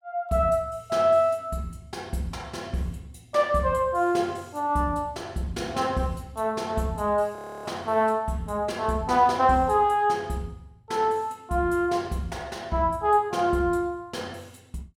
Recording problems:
audio freezing; at 7.5 s

